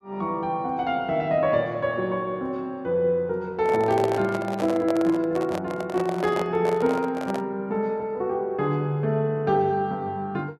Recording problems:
microphone handling noise; from 3.5 to 7.5 s; peak +1 dB vs average level

